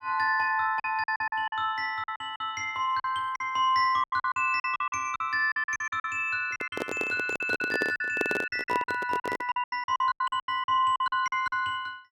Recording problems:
lost packets; 16% of the sound replaced, filled with silence
microphone handling noise; from 6.5 to 9.5 s; peak +2 dB vs average level

